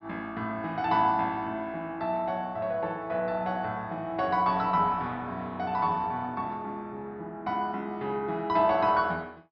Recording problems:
low-pass filter; nothing above 5.5 kHz

